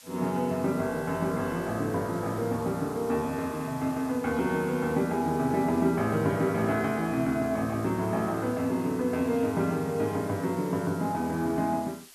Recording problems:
hiss; slope +2 dB per octave, SNR 20 dB

